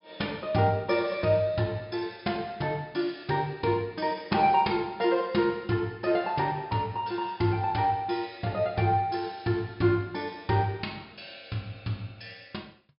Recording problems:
treble missing; nothing above 5.5 kHz

